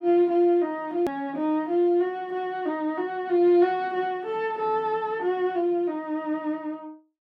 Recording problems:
hard cut with a click; at 1 s

